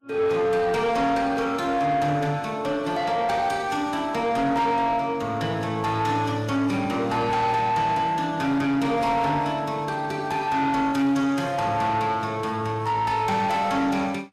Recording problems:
codec artefacts; Vorbis, log-spectral distance 2 dB, nothing above 13.5 kHz
distorted audio; soft clipping, signal-to-distortion ratio 10 dB

